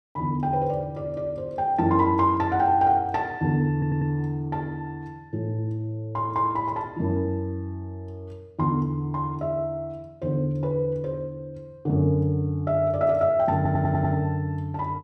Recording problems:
stutter; at 3.5 s and at 14 s

